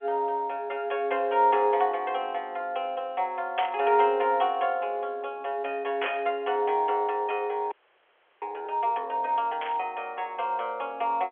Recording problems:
phone line; 340 Hz to 3.4 kHz, G.711
burst of static; at 3.5 s, at 6 s and at 9.5 s; peak 0 dB vs average level
audio freezing; at 7.5 s for 0.5 s

